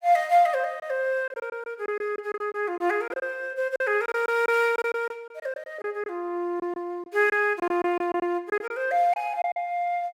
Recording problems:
packet loss; 10% of the sound replaced, filled with silence

